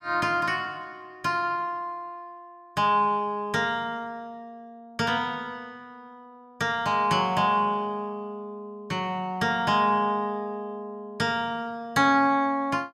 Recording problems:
none

